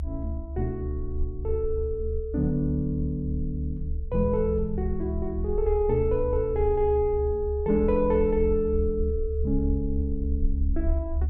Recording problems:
low-frequency rumble; below 72 Hz, SNR 4 dB

